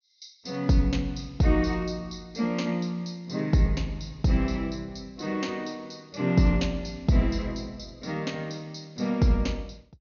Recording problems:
treble cut off; nothing above 6.6 kHz

